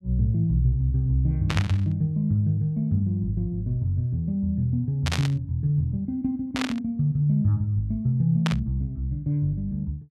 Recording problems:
static burst; 4 times, first at 1.5 s; peak +1 dB vs average level

